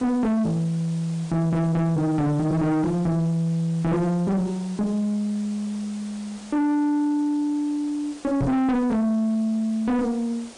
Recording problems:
lossy codec; MP3, log-spectral distance 2 dB
distortion; soft clipping, signal-to-distortion ratio 7 dB
background hiss; slope -3 dB per octave, SNR 21 dB
knock on the microphone; at 8.5 s; peak +3 dB vs average level

